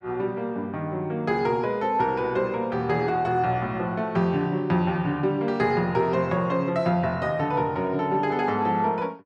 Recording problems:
none

